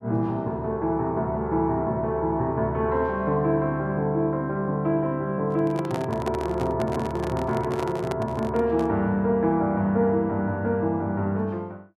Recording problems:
handling noise; from 5.5 to 9 s; peak -3 dB vs average level

